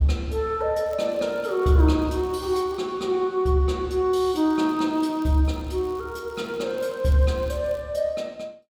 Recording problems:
crackling; from 1 to 3 s and from 4.5 to 8 s; loose cable, SNR 30 dB

